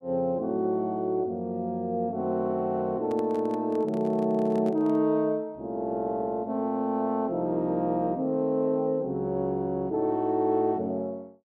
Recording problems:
handling noise; from 3 to 5 s; peak -9 dB vs average level

